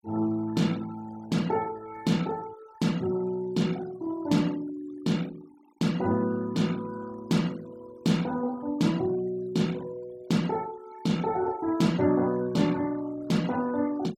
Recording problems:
noise reduction artefacts; signal-to-artefact ratio 20 dB

